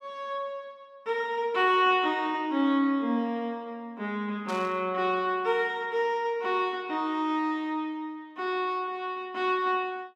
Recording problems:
static burst; at 4.5 s; peak -10 dB vs average level

